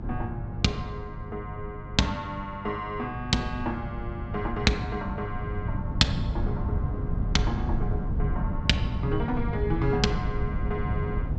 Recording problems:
low-pass filter; nothing above 8 kHz
mains hum; 50 Hz, harmonics up to 550 Hz, SNR 11 dB
wind noise; below 150 Hz, SNR 2 dB

